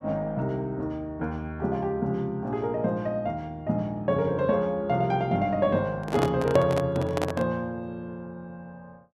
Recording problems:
handling noise; from 6 to 7.5 s; peak +3 dB vs average level

